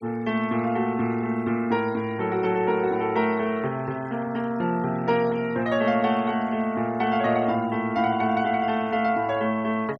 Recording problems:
noise reduction artefacts; signal-to-artefact ratio 24 dB

